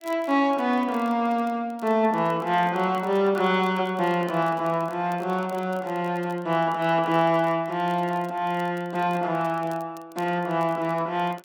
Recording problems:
crackling; vinyl, SNR 29 dB

